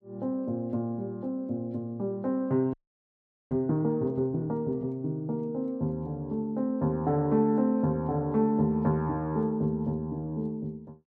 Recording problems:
frozen audio; at 2.5 s for 1 s

